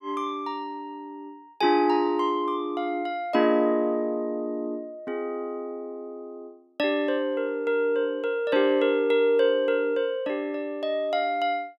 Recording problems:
none

